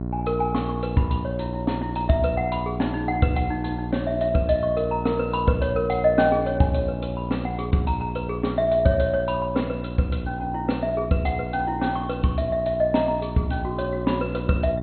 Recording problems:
codec artefacts; MP2, log-spectral distance 3 dB, nothing above 4.2 kHz
hum; 60 Hz, harmonics up to 1.1 kHz, SNR 7 dB

